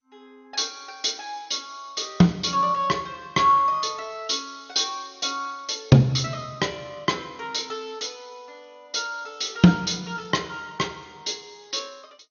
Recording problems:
lossy codec; MP2, log-spectral distance 5 dB, nothing above 6.5 kHz

